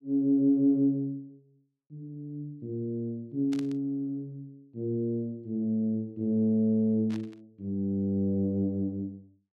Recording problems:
burst of static; at 3.5 s and at 7 s; peak -12 dB vs average level

